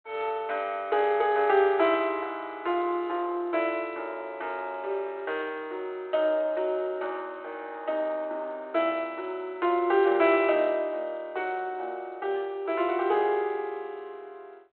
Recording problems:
telephone audio; 300 Hz to 3.4 kHz, G.726

